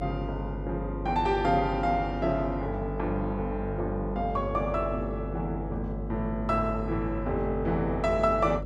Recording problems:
electrical hum; 50 Hz, harmonics up to 600 Hz, SNR 7 dB

